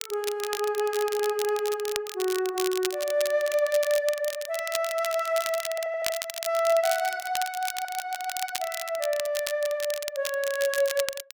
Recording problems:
crackle; vinyl, SNR 8 dB
audio stuttering; at 1 s, at 5.5 s and at 7.5 s

